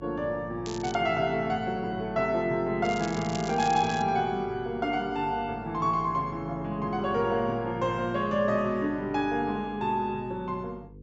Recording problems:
treble missing; nothing above 8 kHz
electrical hum; 50 Hz, harmonics up to 500 Hz, SNR 20 dB
crackling; at 0.5 s and from 3 to 4 s; loose cable, SNR 14 dB

